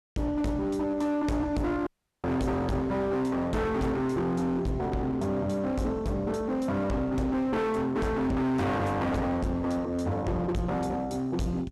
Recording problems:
distorted audio; hard clipping, signal-to-distortion ratio 7 dB
dropout; at 2 s

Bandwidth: 13.5 kHz